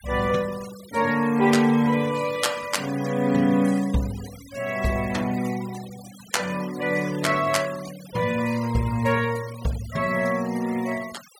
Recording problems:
denoising artefacts; signal-to-artefact ratio 17 dB

